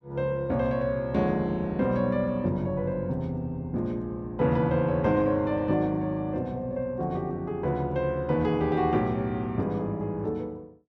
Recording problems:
none

